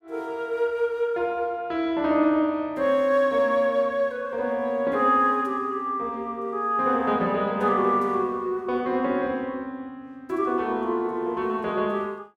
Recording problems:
none

